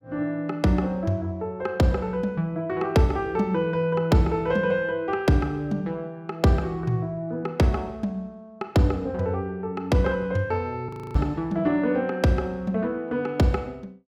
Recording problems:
frozen audio; at 11 s

